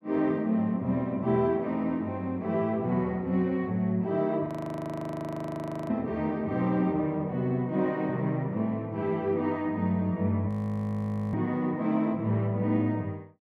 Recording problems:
audio freezing; at 4.5 s for 1.5 s and at 10 s for 1 s

